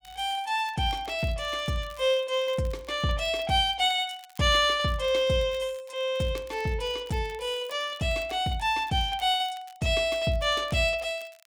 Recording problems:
crackle; vinyl, SNR 26 dB

